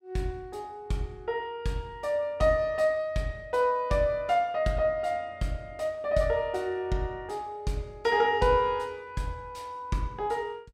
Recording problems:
none

